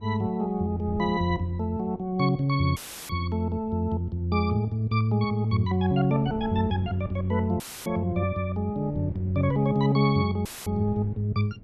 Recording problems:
wind on the microphone; below 230 Hz, SNR 19 dB
audio cutting out; at 3 s, at 7.5 s and at 10 s; filled with static

